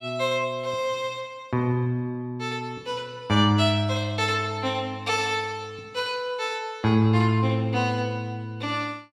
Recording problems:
none

